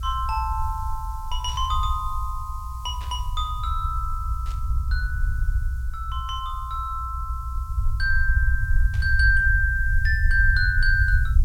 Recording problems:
background hiss; slope +4 dB per octave, SNR 27 dB
low-frequency rumble; below 68 Hz, SNR 1 dB
burst of static; 4 times, first at 1.5 s; peak -14 dB vs average level

